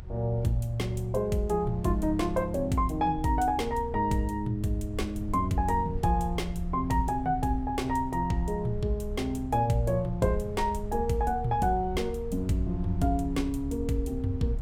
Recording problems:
rumble; below 78 Hz, SNR 10 dB

